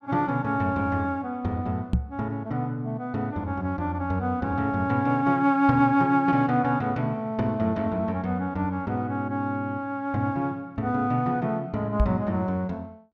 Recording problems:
microphone bump; at 2 s and at 12 s; peak +6 dB vs average level

